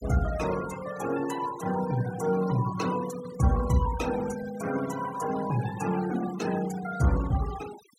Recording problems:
denoising artefacts; signal-to-artefact ratio 14 dB

